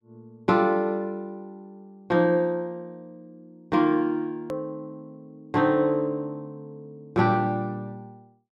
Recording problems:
edit click; at 4.5 s

